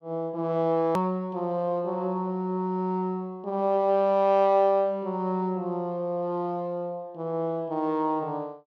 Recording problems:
hard cut with a click; at 1 s

